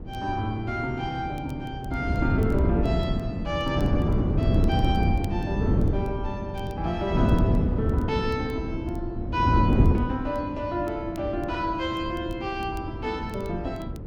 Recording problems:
wind noise; below 250 Hz, SNR -2 dB
crackle; vinyl, SNR 28 dB

